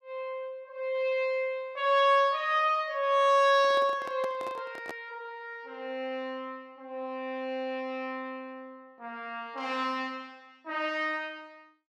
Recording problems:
microphone handling noise; from 3.5 to 5 s; peak -7 dB vs average level

